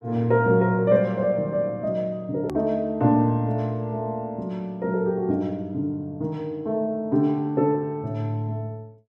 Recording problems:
click at an edit; at 2.5 s

